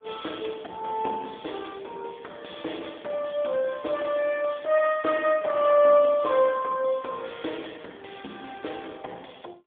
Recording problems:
phone line; 260 Hz to 3.6 kHz, AMR-NB, then MP3

